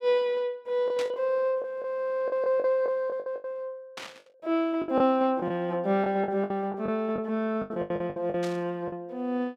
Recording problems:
packet loss; 12% of the sound replaced, filled with the last packet
burst of static; at 1 s, at 4 s and at 8.5 s; peak -6 dB vs average level

